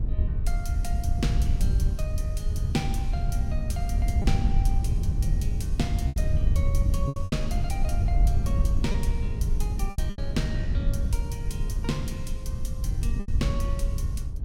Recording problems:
hum; 50 Hz, harmonics up to 1.1 kHz, SNR 26 dB
rumble; below 78 Hz, SNR -1 dB
wind noise; below 84 Hz, SNR -7 dB
lost packets; 4% of the sound replaced, filled with repeated pitch periods

